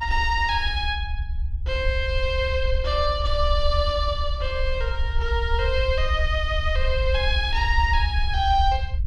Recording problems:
rumble; below 72 Hz, SNR 3 dB

